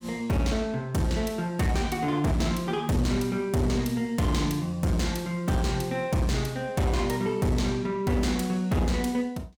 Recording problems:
distorted audio; hard clipping, signal-to-distortion ratio 10 dB

